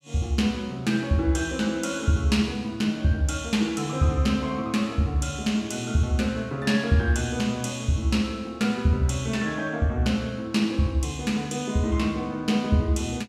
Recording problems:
none

